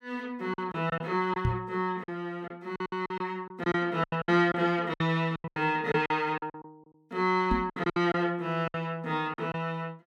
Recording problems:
packet loss; 13% of the sound replaced, filled with silence
microphone thump; at 1.5 s and at 7.5 s; peak +4 dB vs average level

